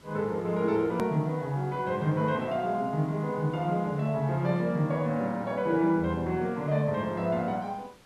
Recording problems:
hiss; slope -3 dB per octave, SNR 27 dB
hard cut with a click; at 1 s

